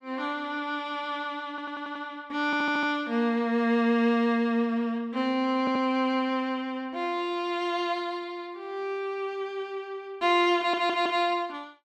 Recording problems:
stutter; 4 times, first at 1.5 s

